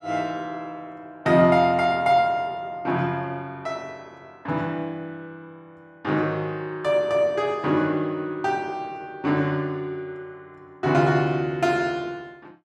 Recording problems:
none

